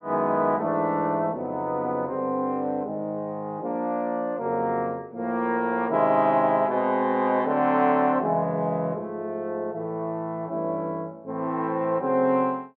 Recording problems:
none

